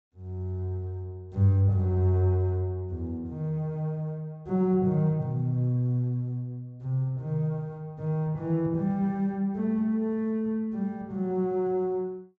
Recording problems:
treble cut off; nothing above 8 kHz

